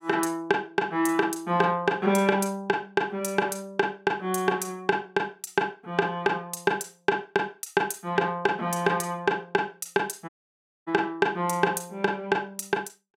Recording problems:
audio cutting out; at 10 s for 0.5 s

